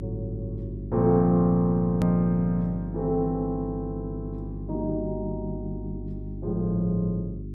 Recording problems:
hum; 50 Hz, harmonics up to 400 Hz, SNR 9 dB
edit click; at 2 s

